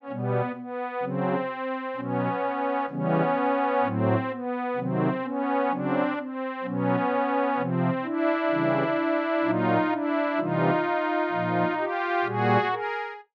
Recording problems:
none

